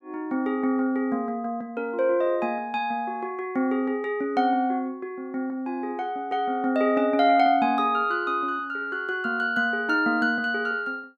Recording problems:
none

